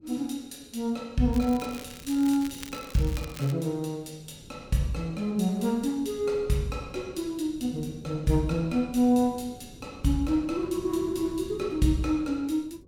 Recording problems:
wind on the microphone; below 280 Hz, SNR 20 dB
crackling; from 1.5 to 3.5 s; loose cable, SNR 16 dB

